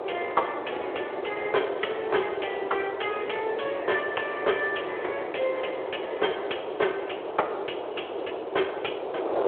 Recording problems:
telephone audio; 320 Hz to 3.4 kHz, Speex
wind on the microphone; below 740 Hz, SNR 4 dB

